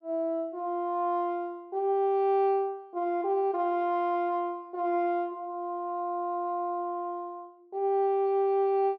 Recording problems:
none

